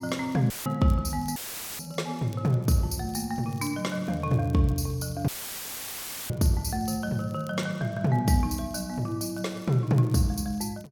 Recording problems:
crackle; vinyl, SNR 28 dB
audio cutting out; at 0.5 s, at 1.5 s and at 5.5 s for 1 s; filled with static

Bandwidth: 17 kHz